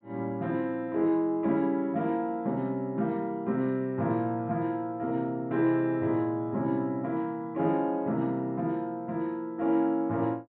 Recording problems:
low-pass filter; nothing above 4 kHz

